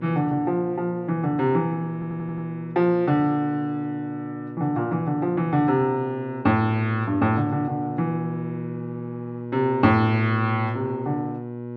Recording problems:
hum; 60 Hz, harmonics up to 1.1 kHz, SNR 12 dB
stutter; at 2 s

